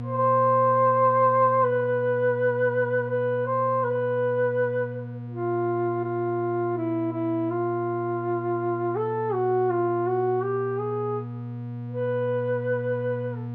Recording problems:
hum; 60 Hz, harmonics up to 960 Hz, SNR 11 dB

